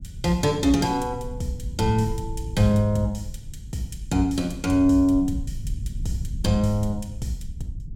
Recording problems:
rumble; below 100 Hz, SNR 11 dB

